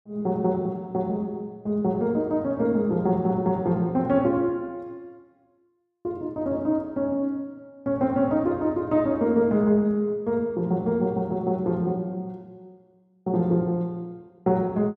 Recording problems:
none

